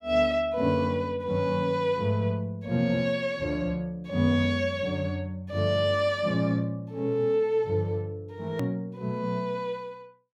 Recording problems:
edit click; at 8.5 s

